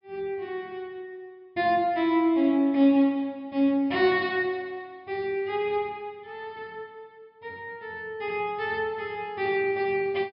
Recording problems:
low-pass filter; nothing above 5.5 kHz

